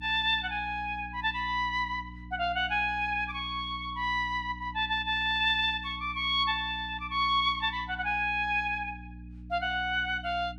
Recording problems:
hum; 60 Hz, harmonics up to 300 Hz, SNR 16 dB

